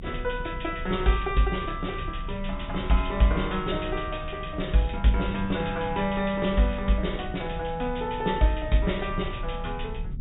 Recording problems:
treble missing; nothing above 4 kHz
low-frequency rumble; below 86 Hz, strongest tone 30 Hz, SNR 11 dB

